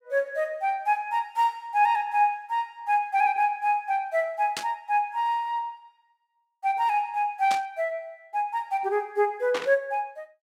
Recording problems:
burst of static; at 4.5 s, at 7.5 s and at 9.5 s; peak -1 dB vs average level

